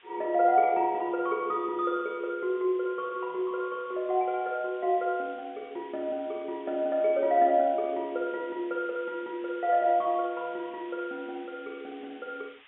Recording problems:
treble missing; nothing above 3.5 kHz
background hiss; SNR 25 dB

